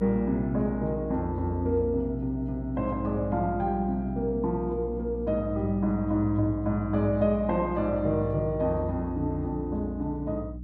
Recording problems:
hum; 60 Hz, harmonics up to 300 Hz, SNR 10 dB

